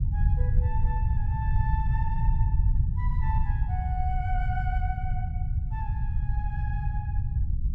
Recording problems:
low-frequency rumble; below 98 Hz, SNR -11 dB

